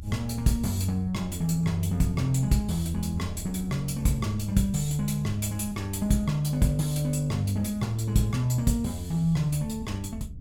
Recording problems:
low-frequency rumble; below 90 Hz, SNR 15 dB

